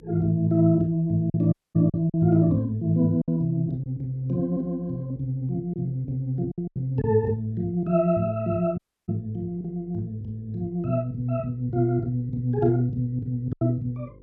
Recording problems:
hum; 50 Hz, harmonics up to 500 Hz, SNR 27 dB
lost packets; 3% of the sound replaced, filled with silence
audio cutting out; at 1.5 s and at 9 s

